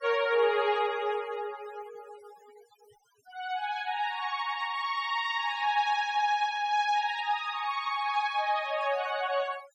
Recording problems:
denoising artefacts; signal-to-artefact ratio 19 dB

